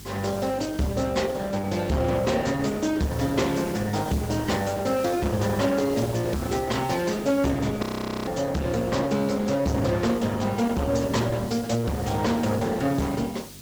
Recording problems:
lossy compression; Opus, log-spectral distance 4 dB
distortion; soft clipping, signal-to-distortion ratio 8 dB
mains hum; 50 Hz, harmonics up to 400 Hz, SNR 19 dB
hiss; SNR 18 dB
frozen audio; at 8 s

